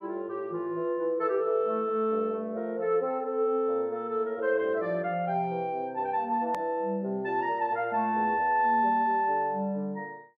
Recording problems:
edit click; at 6.5 s

